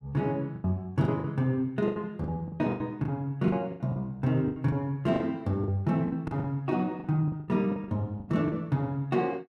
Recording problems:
packet loss; 14% of the sound replaced, filled with the last packet

